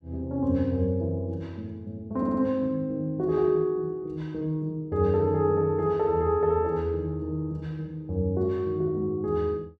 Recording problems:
stutter; at 2 s

